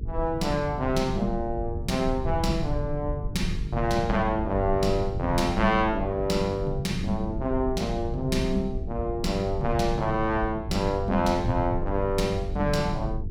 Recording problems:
hum; 50 Hz, harmonics up to 450 Hz, SNR 13 dB
rumble; below 90 Hz, SNR 8 dB

